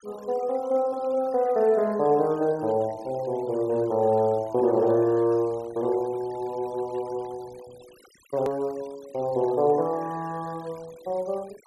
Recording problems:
denoising artefacts; signal-to-artefact ratio 25 dB
hard cut with a click; at 8.5 s

